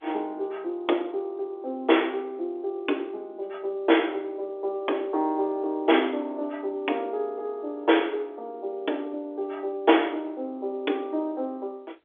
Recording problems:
phone line; 260 Hz to 3.6 kHz, G.711

